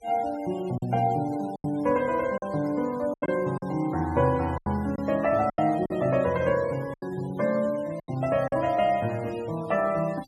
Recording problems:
noise reduction artefacts; signal-to-artefact ratio 21 dB
lost packets; 7% of the sound replaced, filled with silence

